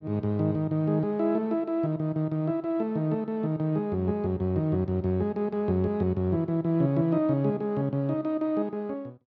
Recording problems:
none

